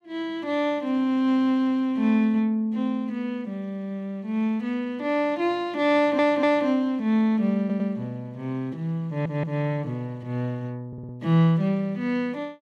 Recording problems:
stutter; 4 times, first at 6 s

